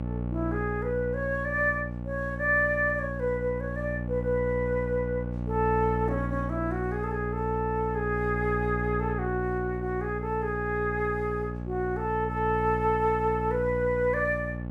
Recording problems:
hum; 60 Hz, harmonics up to 1.1 kHz, SNR 5 dB

